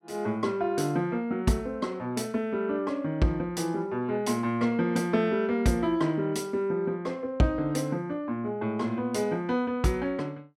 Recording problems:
none

